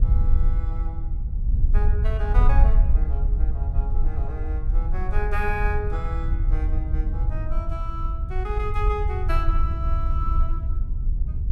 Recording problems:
wind noise; below 60 Hz, SNR -8 dB

